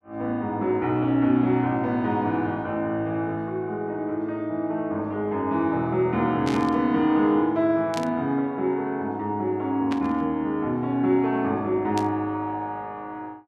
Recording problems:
static burst; 4 times, first at 6.5 s; peak -6 dB vs average level

